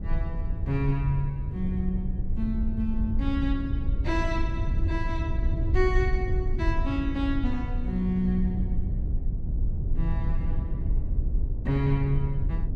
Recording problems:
rumble; below 80 Hz, SNR 0 dB

